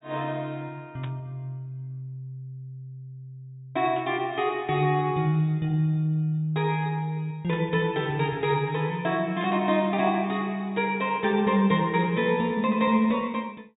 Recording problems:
treble missing; nothing above 4 kHz
burst of static; 4 times, first at 1 s; peak -11 dB vs average level

